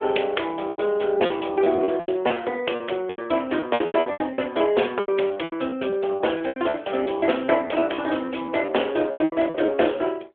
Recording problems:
telephone audio; 280 Hz to 3.4 kHz, AMR-NB
packet loss; 17% of the sound replaced, filled with repeated pitch periods

